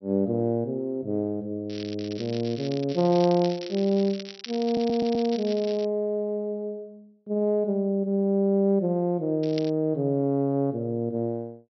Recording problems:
low-pass filter; nothing above 5.7 kHz
crackle; from 1.5 to 6 s and at 9.5 s; loose cable, SNR 16 dB
stutter; at 4.5 s

